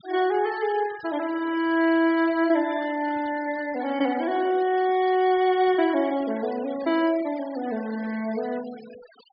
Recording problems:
low-pass filter; nothing above 5.5 kHz
noise reduction artefacts; signal-to-artefact ratio 20 dB

